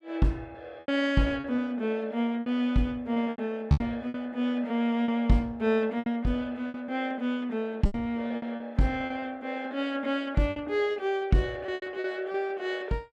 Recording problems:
packet loss; 9% of the sound replaced, filled with repeated pitch periods

